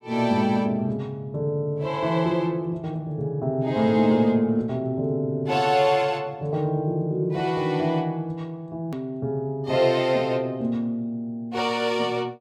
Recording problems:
edit click; at 9 s

